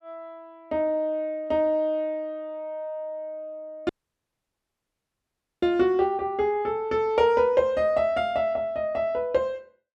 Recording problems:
audio cutting out; at 4 s for 1.5 s

